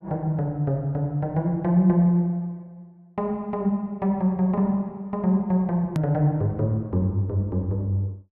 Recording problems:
click at an edit; at 6 s

